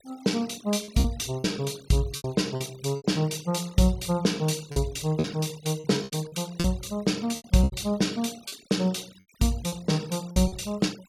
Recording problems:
noise reduction artefacts; signal-to-artefact ratio 21 dB
packet loss; 9% of the sound replaced, filled with repeated pitch periods

